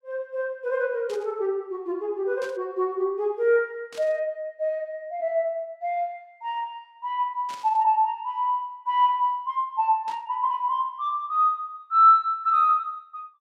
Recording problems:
burst of static; 5 times, first at 1 s; peak -13 dB vs average level

